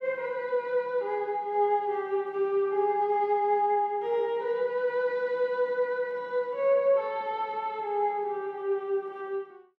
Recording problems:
none

